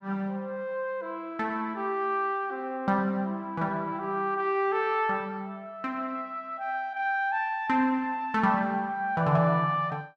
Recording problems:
none

